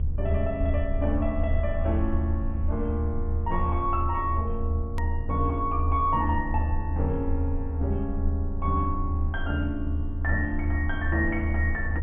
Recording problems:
treble cut off; nothing above 3.4 kHz
rumble; below 80 Hz, strongest tone 24 Hz, SNR -1 dB
click at an edit; at 5 s

